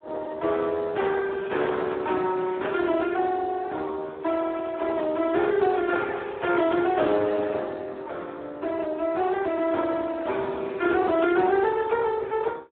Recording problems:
phone line; 280 Hz to 3.6 kHz, Speex

